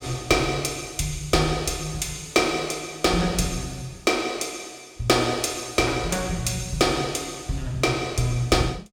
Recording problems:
none

